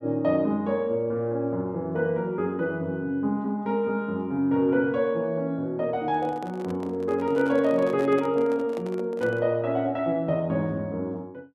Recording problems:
handling noise; from 6 to 9.5 s; peak -7 dB vs average level

